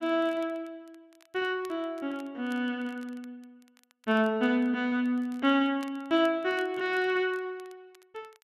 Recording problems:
crackling; vinyl, SNR 29 dB

